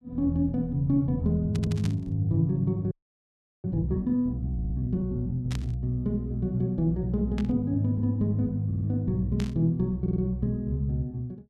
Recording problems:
stutter; 4 times, first at 1.5 s
static burst; 4 times, first at 1.5 s; peak -8 dB vs average level
frozen audio; at 3 s for 0.5 s

